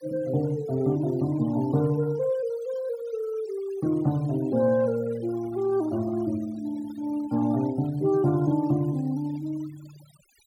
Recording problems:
denoising artefacts; signal-to-artefact ratio 22 dB

